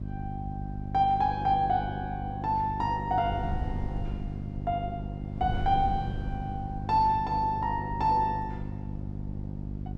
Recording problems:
hum; 50 Hz, harmonics up to 400 Hz, SNR 8 dB
wind on the microphone; below 120 Hz, SNR 12 dB

